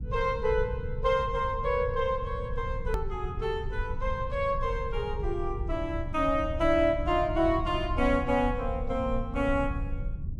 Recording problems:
rumble; below 90 Hz, SNR 7 dB
edit click; at 3 s

